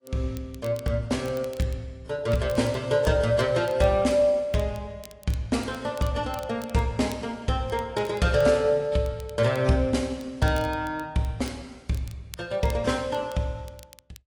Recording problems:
codec artefacts; AAC, log-spectral distance 2 dB
crackling; vinyl, SNR 24 dB

